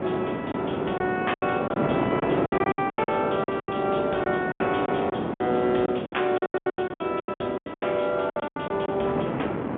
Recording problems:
telephone audio; 260 Hz to 3.5 kHz, G.711
wind noise; below 690 Hz, SNR 3 dB
packet loss; 18% of the sound replaced, filled with silence

